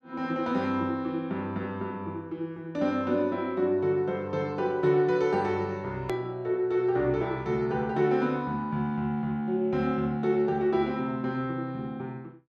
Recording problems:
click at an edit; at 6 s

